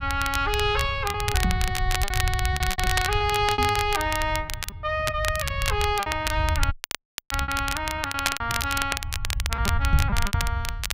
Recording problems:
low-frequency rumble; below 92 Hz, SNR 4 dB
crackle; vinyl, SNR 4 dB
packet loss; 11% of the sound replaced, filled with repeated pitch periods
microphone thump; at 1.5 s, at 3.5 s and at 10 s; peak +6 dB vs average level
dropout; at 6.5 s for 0.5 s

